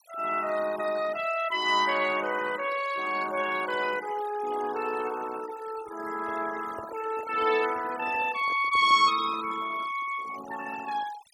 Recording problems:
noise reduction artefacts; signal-to-artefact ratio 14 dB
handling noise; from 6 to 9.5 s; peak -11 dB vs average level

